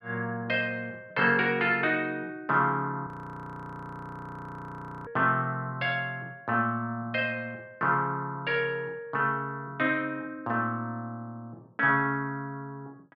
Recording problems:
frozen audio; at 3 s for 2 s

